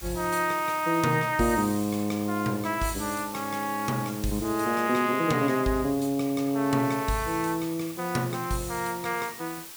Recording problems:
background hiss; slope +1 dB per octave, SNR 14 dB

